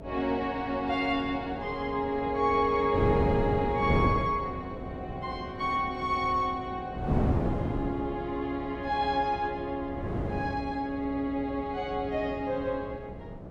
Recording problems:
hum; 60 Hz, harmonics up to 660 Hz, SNR 15 dB
wind noise; below 360 Hz, SNR 5 dB

